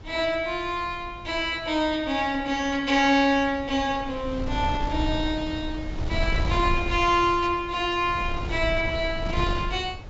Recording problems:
treble cut off; nothing above 8 kHz
wind on the microphone; below 130 Hz, SNR 8 dB

